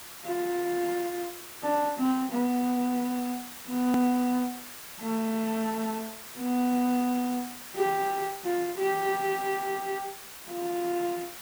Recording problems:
background hiss; slope 0 dB per octave, SNR 12 dB
click at an edit; at 4 s

